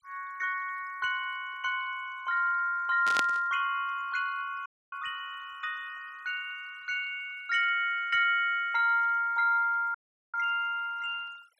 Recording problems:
denoising artefacts; signal-to-artefact ratio 27 dB
burst of static; at 3 s; peak +2 dB vs average level
audio cutting out; at 4.5 s and at 10 s

